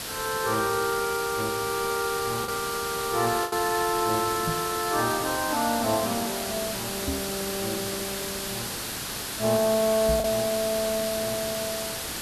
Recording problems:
background hiss; slope -1 dB per octave, SNR 4 dB
packet loss; 1.4% of the sound replaced, filled with the last packet
microphone bump; at 4.5 s, at 7 s and at 10 s; peak 0 dB vs average level

